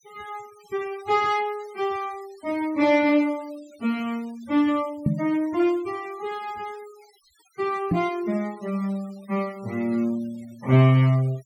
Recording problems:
noise reduction artefacts; signal-to-artefact ratio 24 dB
microphone thump; at 5 s and at 8 s; peak +6 dB vs average level

